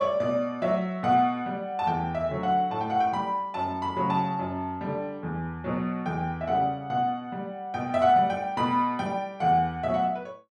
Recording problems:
none

